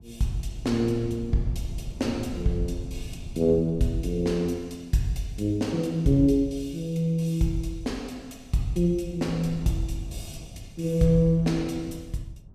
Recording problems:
wind noise; below 120 Hz, SNR 15 dB

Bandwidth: 14.5 kHz